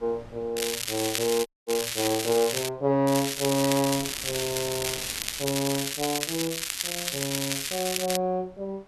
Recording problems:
wind noise; below 1 kHz, SNR 23 dB
crackling; from 0.5 to 2.5 s and from 3 to 8 s; loose cable, SNR 1 dB
dropout; at 1.5 s

